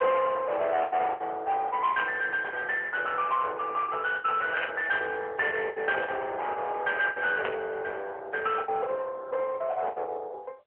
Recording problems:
telephone audio; 370 Hz to 3.1 kHz, AMR-NB
distortion; soft clipping, signal-to-distortion ratio 10 dB
lost packets; 11% of the sound replaced, filled with the last packet
static burst; at 2 s, at 4.5 s and at 7.5 s; peak +1 dB vs average level

